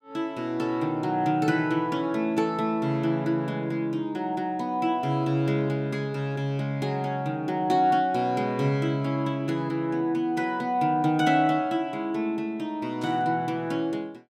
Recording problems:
static burst; at 13 s; peak -15 dB vs average level

